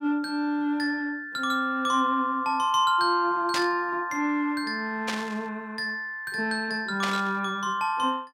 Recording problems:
static burst; at 3.5 s, at 5 s and at 7 s; peak +1 dB vs average level

